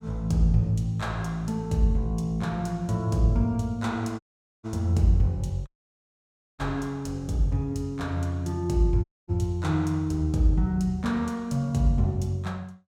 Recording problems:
audio cutting out; at 4 s, at 5.5 s for 1 s and at 9 s

